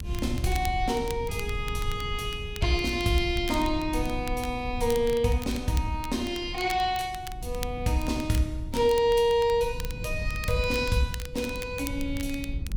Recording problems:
low-frequency rumble; below 94 Hz, SNR 10 dB
crackle; vinyl, SNR 16 dB

